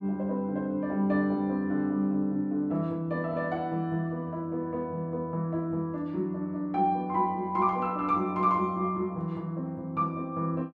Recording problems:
none

